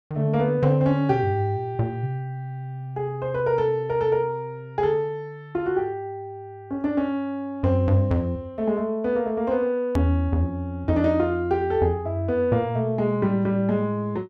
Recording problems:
edit click; at 10 s

